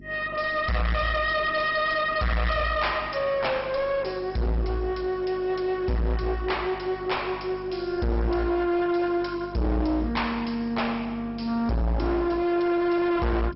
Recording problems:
codec artefacts; MP2, log-spectral distance 3 dB, nothing above 5.5 kHz
distortion; hard clipping, uneven, signal-to-distortion ratio 5 dB
electrical hum; 50 Hz, harmonics up to 750 Hz, SNR 19 dB

